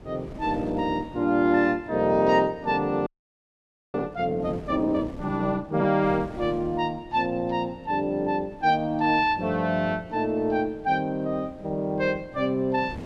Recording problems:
wind on the microphone; below 390 Hz, SNR 19 dB
frozen audio; at 3 s for 1 s

